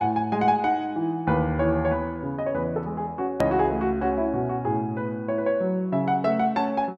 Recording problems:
click at an edit; at 3.5 s

